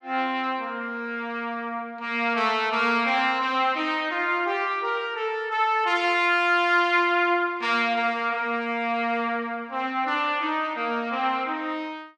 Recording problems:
none

